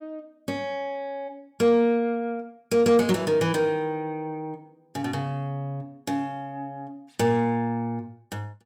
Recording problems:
distorted audio; soft clipping, signal-to-distortion ratio 12 dB

